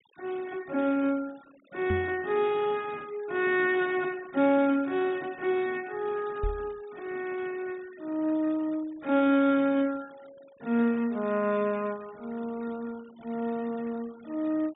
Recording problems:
treble missing; nothing above 4 kHz
noise reduction artefacts; signal-to-artefact ratio 24 dB
microphone thump; at 2 s and at 6.5 s; peak 0 dB vs average level

